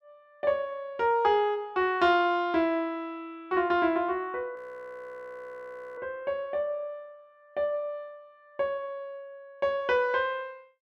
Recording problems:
audio freezing; at 4.5 s for 1.5 s

